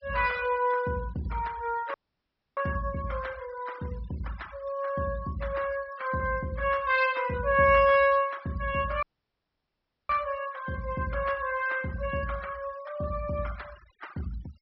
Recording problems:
treble missing; nothing above 5.7 kHz
denoising artefacts; signal-to-artefact ratio 20 dB
dropout; at 2 s for 0.5 s and at 9 s for 1 s

